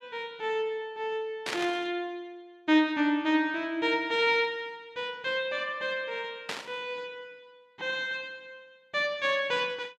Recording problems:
burst of static; at 1.5 s and at 6.5 s; peak +1 dB vs average level

